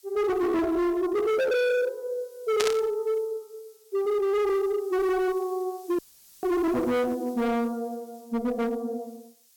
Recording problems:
distortion; hard clipping, signal-to-distortion ratio 6 dB
hiss; SNR 27 dB
static burst; at 2.5 s; peak +3 dB vs average level
audio cutting out; at 6 s

